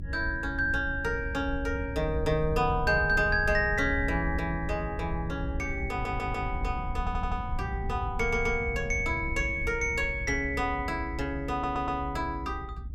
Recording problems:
low-frequency rumble; below 92 Hz, SNR 7 dB
stutter; 4 times, first at 6 s

